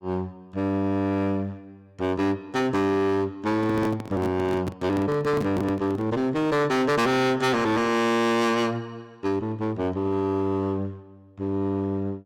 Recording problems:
distortion; hard clipping, uneven, signal-to-distortion ratio 7 dB
microphone handling noise; from 3.5 to 6 s; peak -1 dB vs average level

